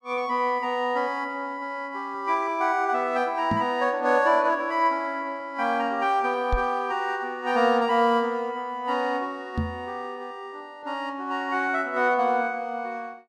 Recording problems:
knock on the microphone; at 3.5 s, at 6.5 s and at 9.5 s; peak +2 dB vs average level

